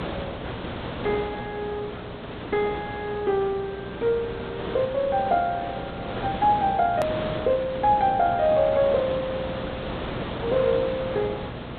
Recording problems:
treble cut off; nothing above 4 kHz
hum; 60 Hz, harmonics up to 720 Hz, SNR 18 dB
background hiss; SNR 9 dB
edit click; at 7 s

